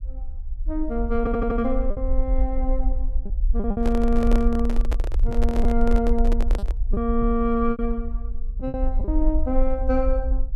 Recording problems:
low-frequency rumble; below 48 Hz, SNR 1 dB
lost packets; 5% of the sound replaced, filled with repeated pitch periods
stutter; at 1 s
handling noise; from 4 to 7 s; peak -1 dB vs average level

